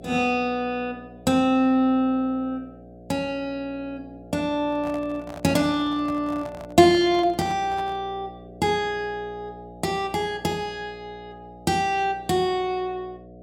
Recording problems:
hum; 60 Hz, harmonics up to 720 Hz, SNR 20 dB
microphone handling noise; from 4.5 to 8 s; peak -10 dB vs average level

